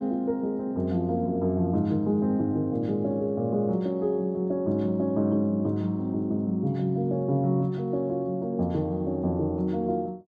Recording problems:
none

